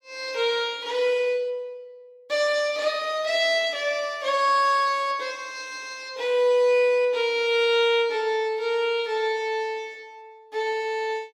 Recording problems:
none

